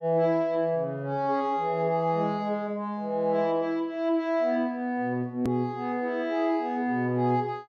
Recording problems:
click at an edit; at 5.5 s

